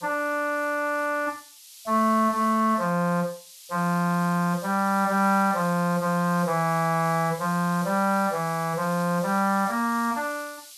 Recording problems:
hiss; SNR 18 dB

